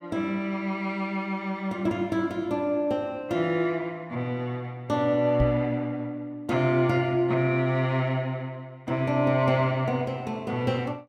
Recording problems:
microphone thump; at 5.5 s; peak +3 dB vs average level

